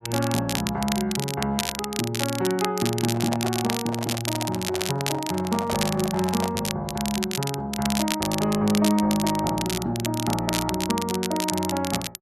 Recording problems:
crackling; vinyl, SNR 5 dB
handling noise; from 3 to 6.5 s; peak 0 dB vs average level

